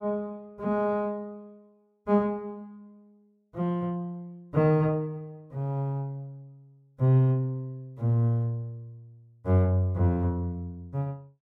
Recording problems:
none

